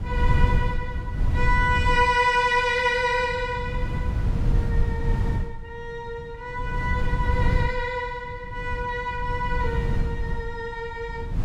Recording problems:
wind on the microphone; below 110 Hz, SNR 2 dB

